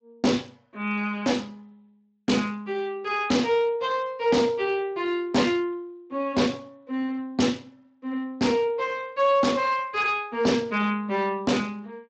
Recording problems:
lossy compression; Speex, log-spectral distance 3 dB, nothing above 7.6 kHz
distorted audio; hard clipping, uneven, signal-to-distortion ratio 10 dB

